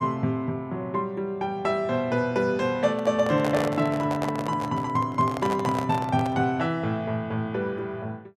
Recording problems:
microphone handling noise; from 3 to 6.5 s; peak -1 dB vs average level

